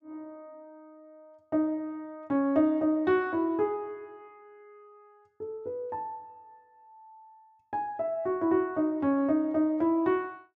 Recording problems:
none

